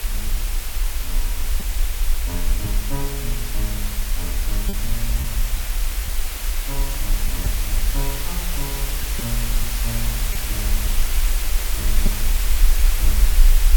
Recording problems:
hiss; slope 0 dB per octave, SNR -7 dB
low-frequency rumble; below 44 Hz, SNR -9 dB
crackle; vinyl, SNR 30 dB
lost packets; 1.6% of the sound replaced, filled with repeated pitch periods

